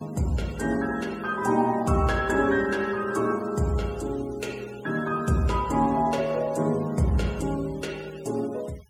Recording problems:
noise reduction artefacts; signal-to-artefact ratio 21 dB

